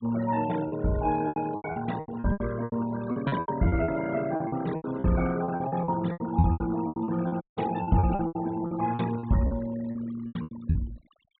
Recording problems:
treble cut off; nothing above 4 kHz
noise reduction artefacts; signal-to-artefact ratio 15 dB
lost packets; 19% of the sound replaced, filled with repeated pitch periods
dropout; at 7.5 s

